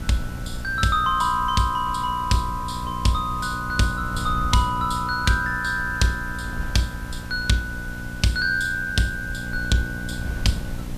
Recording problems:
hum; 60 Hz, harmonics up to 1.1 kHz, SNR 11 dB
hiss; slope -2 dB per octave, SNR 21 dB
wind on the microphone; below 92 Hz, SNR 13 dB

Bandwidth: 14.5 kHz